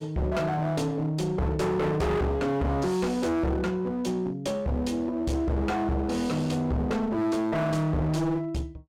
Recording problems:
distorted audio; hard clipping, uneven, signal-to-distortion ratio 5 dB

